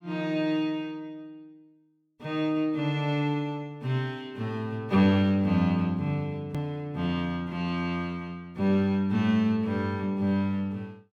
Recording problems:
hard cut with a click; at 6.5 s

